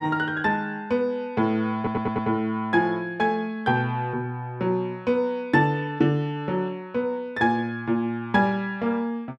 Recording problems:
audio stuttering; at 2 s

